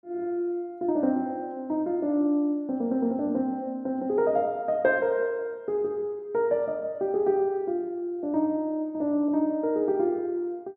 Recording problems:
none

